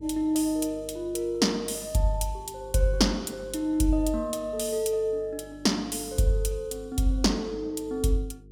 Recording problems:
electrical hum; 50 Hz, harmonics up to 450 Hz, SNR 22 dB

